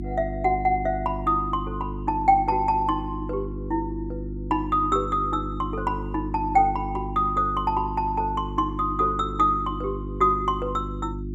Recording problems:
hum; 50 Hz, harmonics up to 350 Hz, SNR 8 dB

